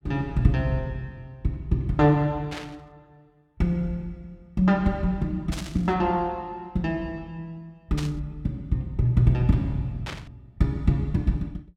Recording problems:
static burst; 4 times, first at 2.5 s; peak -5 dB vs average level

